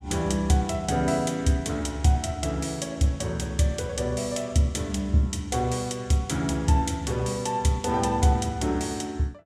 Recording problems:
none

